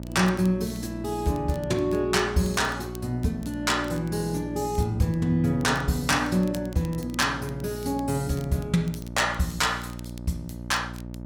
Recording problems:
hum; 60 Hz, harmonics up to 960 Hz, SNR 11 dB
crackling; vinyl, SNR 24 dB

